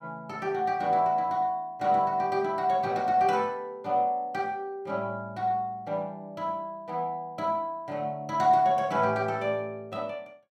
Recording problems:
none

